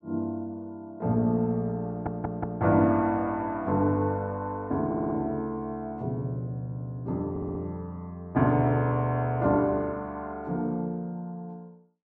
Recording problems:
stutter; at 2 s, at 5 s and at 7.5 s

